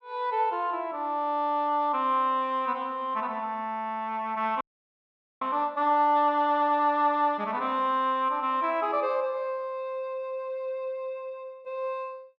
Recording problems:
audio freezing; at 4.5 s for 1 s

